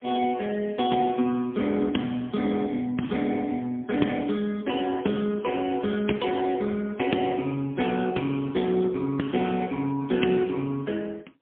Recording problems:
telephone audio; 190 Hz to 3.4 kHz, AMR-NB, then MP3

